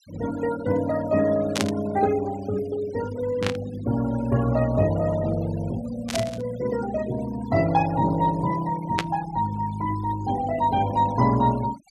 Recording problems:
noise reduction artefacts; signal-to-artefact ratio 17 dB
static burst; 4 times, first at 1.5 s; peak +3 dB vs average level

